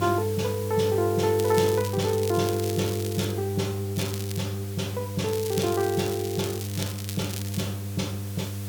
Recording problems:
electrical hum; 50 Hz, harmonics up to 500 Hz, SNR 5 dB
background hiss; slope -1 dB per octave, SNR 14 dB
crackling; from 1.5 to 3.5 s, at 4 s and from 5.5 to 7.5 s; loose cable, SNR 10 dB

